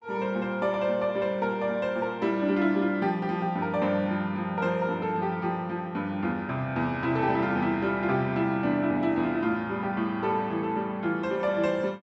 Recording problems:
none

